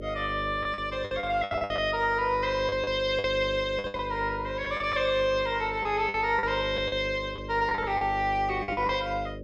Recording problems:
electrical hum; 50 Hz, harmonics up to 600 Hz, SNR 12 dB
lost packets; 11% of the sound replaced, filled with the last packet

